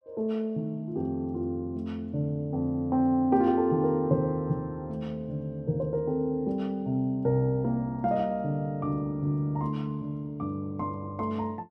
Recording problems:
none

